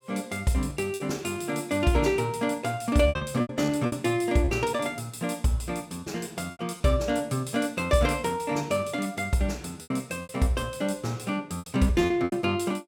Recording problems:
lost packets; 7% of the sound replaced, filled with repeated pitch periods

